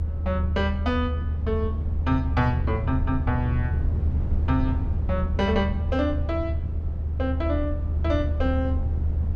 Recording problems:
rumble; below 80 Hz, strongest tone 76 Hz, SNR -1 dB

